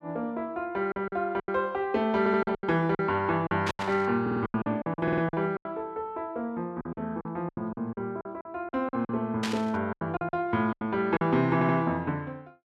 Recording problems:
lost packets; 13% of the sound replaced, filled with silence
stutter; 4 times, first at 2 s
burst of static; at 3.5 s and at 9.5 s; peak 0 dB vs average level

